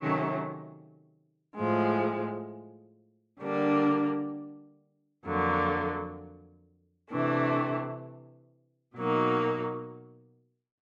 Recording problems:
none

